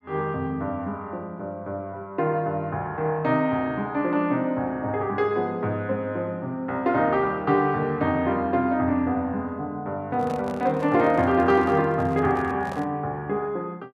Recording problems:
handling noise; from 10 to 13 s; peak -7 dB vs average level

